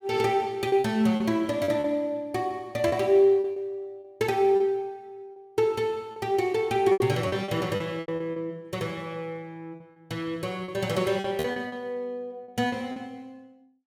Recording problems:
packet loss; 9% of the sound replaced, filled with repeated pitch periods

